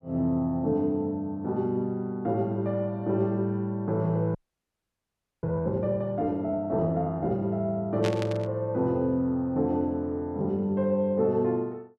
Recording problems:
frozen audio; at 4.5 s for 1 s
static burst; at 8 s; peak -3 dB vs average level

